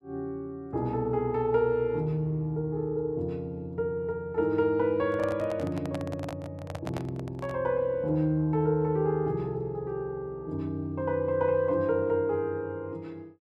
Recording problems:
handling noise; from 5 to 7.5 s; peak -4 dB vs average level

